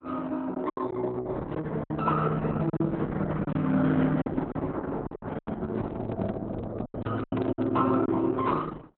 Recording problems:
lossy codec; Opus, log-spectral distance 3 dB, nothing above 3.9 kHz
packet loss; 9% of the sound replaced, filled with silence
microphone handling noise; from 5 to 8 s; peak -2 dB vs average level

